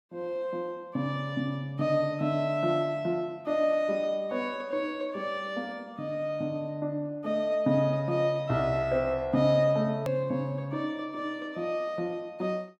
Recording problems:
hard cut with a click; at 10 s

